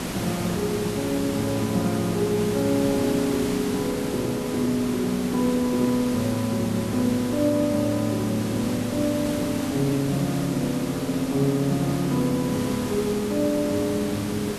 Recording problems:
hiss; slope -4 dB per octave, SNR 7 dB

